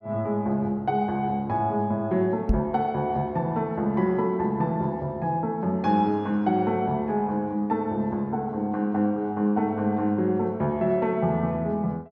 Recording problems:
knock on the microphone; at 2.5 s; peak +7 dB vs average level

